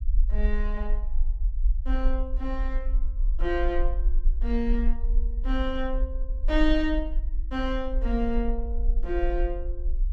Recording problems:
low-frequency rumble; below 44 Hz, SNR -1 dB

